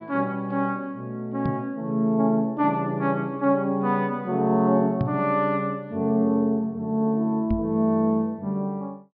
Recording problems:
treble missing; nothing above 5.5 kHz
knock on the microphone; at 1.5 s, at 5 s and at 7.5 s; peak +2 dB vs average level

